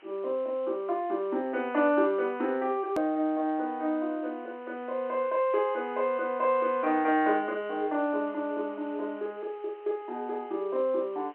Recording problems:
telephone audio; 260 Hz to 3.4 kHz, G.711
background hiss; SNR 28 dB
edit click; at 3 s

